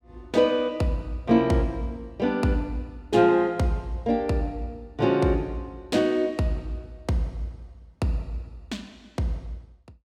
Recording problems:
none

